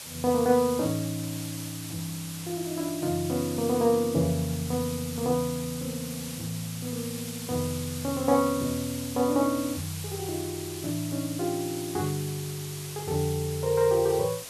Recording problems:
background hiss; slope 0 dB per octave, SNR 9 dB

